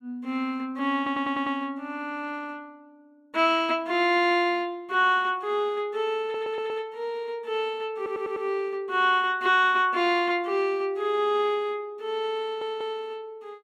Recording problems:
audio stuttering; 4 times, first at 1 s

